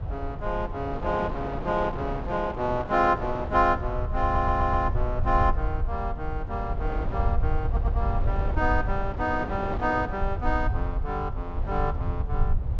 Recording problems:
treble cut off; nothing above 8 kHz
low-frequency rumble; below 76 Hz, SNR 3 dB
wind noise; below 750 Hz, SNR 11 dB
stutter; at 4 s and at 7.5 s

